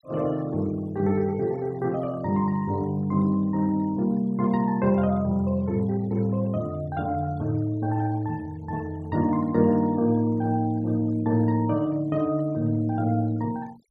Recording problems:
noise reduction artefacts; signal-to-artefact ratio 28 dB

